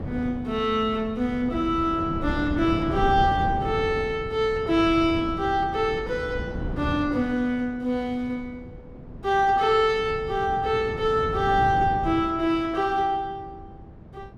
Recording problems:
wind on the microphone; below 280 Hz, SNR 10 dB

